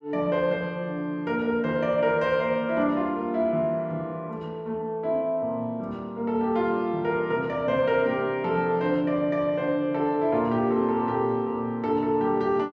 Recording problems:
none

